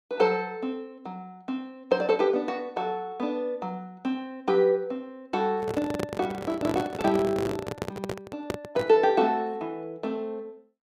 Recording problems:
handling noise; from 5.5 to 9 s; peak +1 dB vs average level

